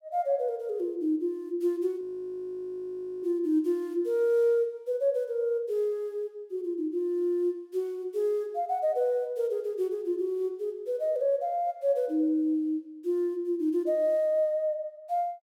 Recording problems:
audio freezing; at 2 s for 1 s

